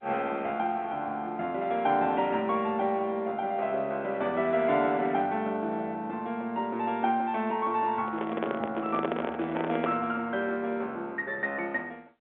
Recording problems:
telephone audio; 170 Hz to 3.5 kHz, G.711
handling noise; from 8 to 10 s; peak +2 dB vs average level

